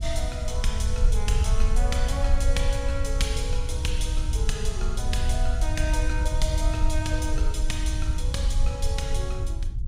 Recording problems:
low-frequency rumble; below 64 Hz, SNR -4 dB

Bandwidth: 15.5 kHz